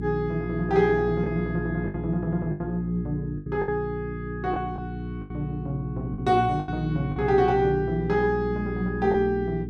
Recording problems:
electrical hum; 60 Hz, harmonics up to 420 Hz, SNR 7 dB
packet loss; 6% of the sound replaced, filled with the last packet

